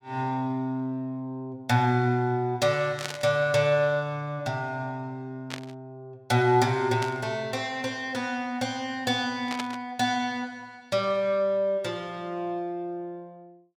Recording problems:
static burst; 4 times, first at 3 s; peak -1 dB vs average level

